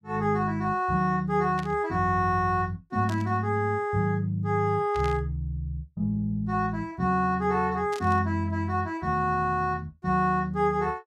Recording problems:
static burst; 4 times, first at 1.5 s; peak -10 dB vs average level

